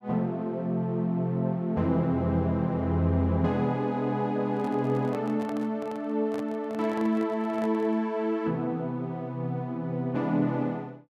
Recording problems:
microphone handling noise; from 4.5 to 8 s; peak -9 dB vs average level

